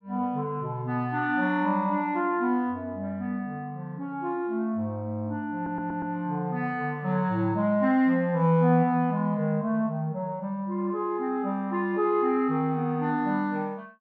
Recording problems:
audio stuttering; at 5.5 s

